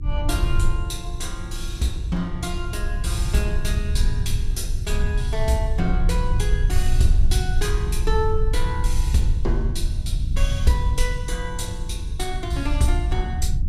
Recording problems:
electrical hum; 60 Hz, harmonics up to 360 Hz, SNR 19 dB
low-frequency rumble; below 68 Hz, SNR -2 dB

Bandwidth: 14.5 kHz